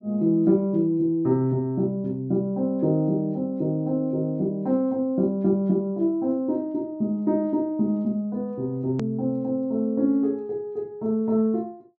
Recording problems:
low-pass filter; nothing above 8 kHz
edit click; at 9 s

